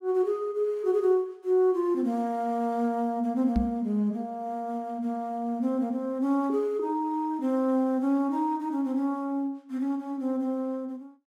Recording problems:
knock on the microphone; at 3.5 s; peak +3 dB vs average level

